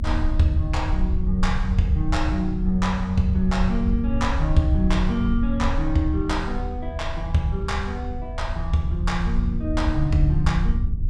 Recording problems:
hum; 50 Hz, harmonics up to 300 Hz, SNR 21 dB
rumble; below 76 Hz, SNR 2 dB

